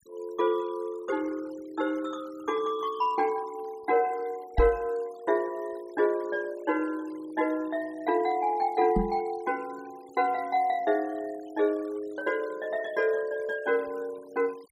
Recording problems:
noise reduction artefacts; signal-to-artefact ratio 24 dB
microphone bump; at 4.5 s and at 9 s; peak +6 dB vs average level

